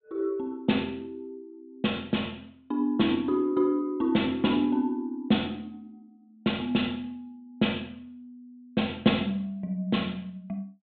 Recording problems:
treble cut off; nothing above 4 kHz

